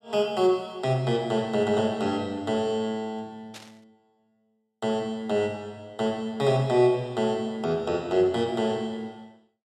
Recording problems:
static burst; at 3.5 s; peak -12 dB vs average level

